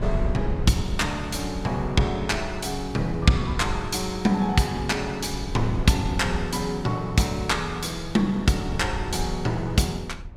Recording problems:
rumble; below 96 Hz, SNR 10 dB

